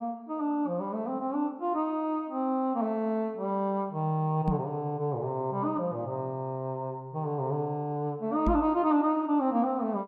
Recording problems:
microphone bump; at 4.5 s and at 8.5 s; peak +4 dB vs average level

